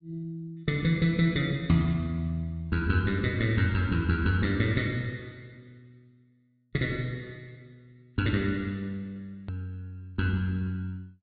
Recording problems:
treble missing; nothing above 4.5 kHz
hard cut with a click; at 9.5 s

